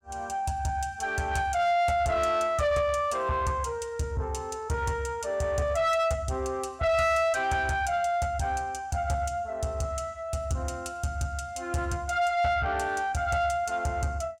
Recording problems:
distortion; soft clipping, signal-to-distortion ratio 11 dB

